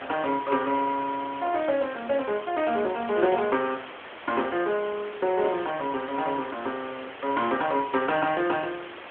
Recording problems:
phone line; 240 Hz to 3.4 kHz, AMR-NB
hiss; SNR 14 dB

